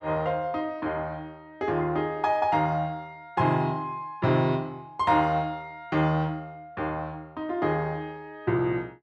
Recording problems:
none

